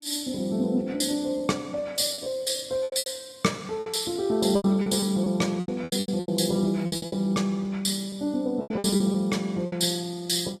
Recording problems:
lossy compression; AAC, log-spectral distance 3 dB, nothing above 14.7 kHz
lost packets; 12% of the sound replaced, filled with repeated pitch periods

